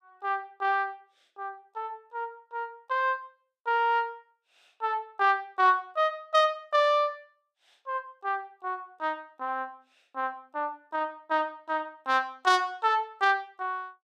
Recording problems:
none

